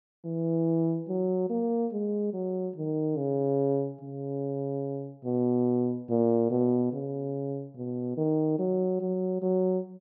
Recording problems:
none

